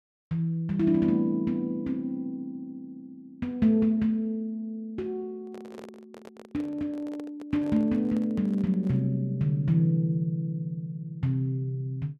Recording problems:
handling noise; from 5.5 to 9 s; peak -11 dB vs average level

